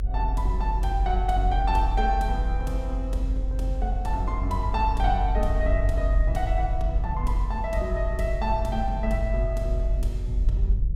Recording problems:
hum; 60 Hz, harmonics up to 600 Hz, SNR 15 dB
low-frequency rumble; below 48 Hz, strongest tone 46 Hz, SNR -2 dB

